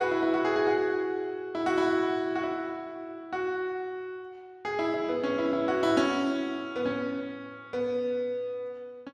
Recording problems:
none

